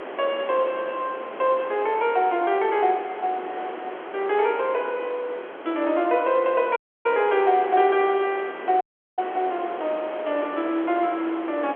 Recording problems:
telephone audio; 280 Hz to 3.4 kHz, G.711
background hiss; SNR 12 dB
audio cutting out; at 7 s and at 9 s

